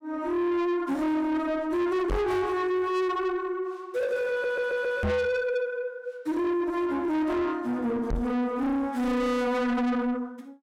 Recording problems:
distorted audio; soft clipping, signal-to-distortion ratio 7 dB
microphone thump; at 2 s, at 5 s and at 8 s; peak +4 dB vs average level
audio stuttering; at 4.5 s

